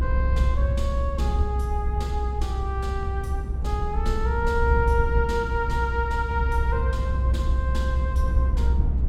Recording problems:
low-frequency rumble; below 66 Hz, strongest tone 64 Hz, SNR -3 dB

